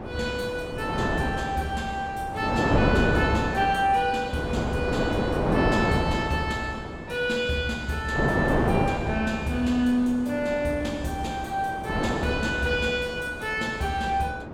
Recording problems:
wind noise; below 670 Hz, SNR 2 dB

